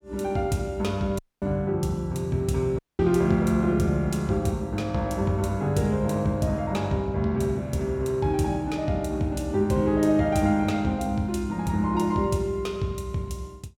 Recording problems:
dropout; at 1 s and at 3 s

